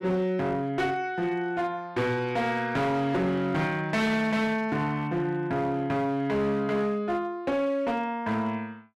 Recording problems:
distortion; hard clipping, signal-to-distortion ratio 11 dB

